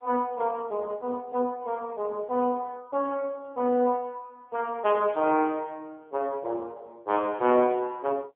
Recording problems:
phone line; 280 Hz to 3.3 kHz, AMR-NB

